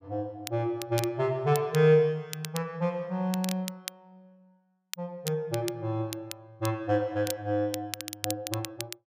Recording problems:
crackling; vinyl, SNR 11 dB

